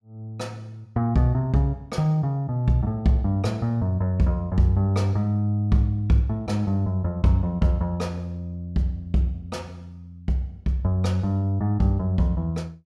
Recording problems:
none

